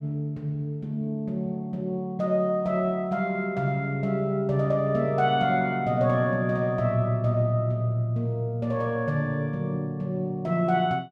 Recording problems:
none

